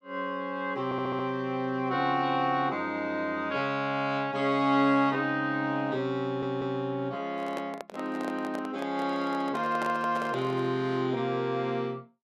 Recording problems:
stutter; at 1 s and at 6 s
handling noise; from 7.5 to 11 s; peak -3 dB vs average level

